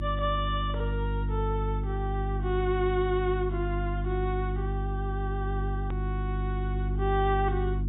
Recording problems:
treble missing; nothing above 4 kHz
hum; 50 Hz, harmonics up to 350 Hz, SNR 0 dB
click at an edit; at 6 s

